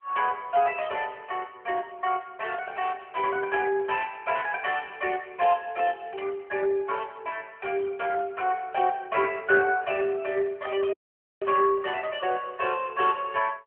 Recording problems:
telephone audio; 280 Hz to 3.1 kHz, AMR-NB
dropout; at 11 s

